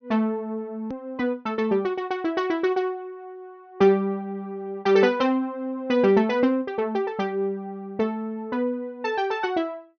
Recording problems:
treble missing; nothing above 6.3 kHz
edit click; at 1 s

